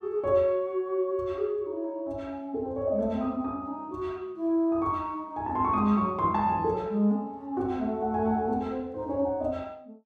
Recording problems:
none

